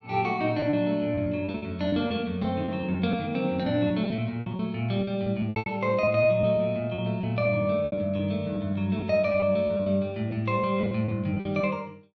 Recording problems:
packet loss; 12% of the sound replaced, filled with repeated pitch periods

